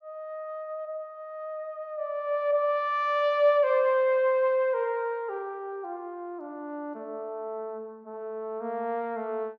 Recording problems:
none

